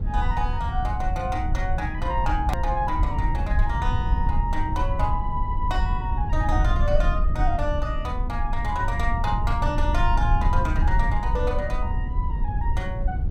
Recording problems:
rumble; below 74 Hz, SNR -2 dB
hard cut with a click; at 2.5 s

